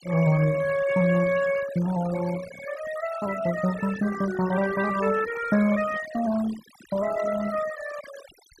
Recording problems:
noise reduction artefacts; signal-to-artefact ratio 14 dB

